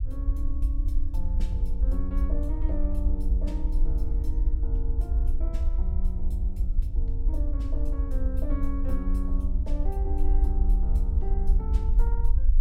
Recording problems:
low-frequency rumble; below 54 Hz, SNR -10 dB

